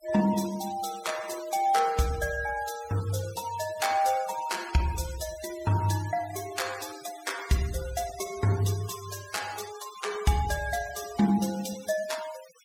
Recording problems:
noise reduction artefacts; signal-to-artefact ratio 13 dB

